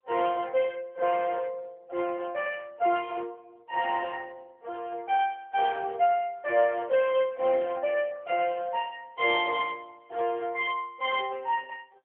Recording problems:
phone line; 300 Hz to 3.4 kHz, AMR-NB

